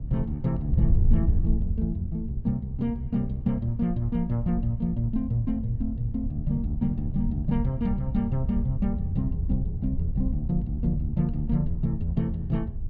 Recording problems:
wind on the microphone; below 82 Hz, SNR 3 dB

